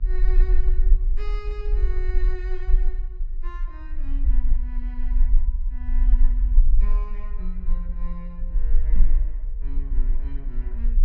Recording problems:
treble cut off; nothing above 8 kHz
hum; 60 Hz, harmonics up to 1.1 kHz, SNR 21 dB
rumble; below 38 Hz, strongest tone 18 Hz, SNR -16 dB
microphone thump; at 9 s; peak +8 dB vs average level

